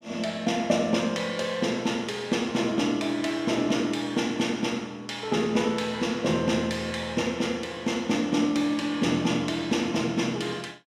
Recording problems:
none

